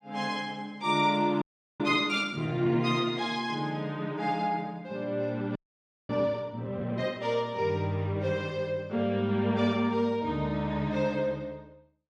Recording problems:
frozen audio; at 1.5 s and at 5.5 s for 0.5 s

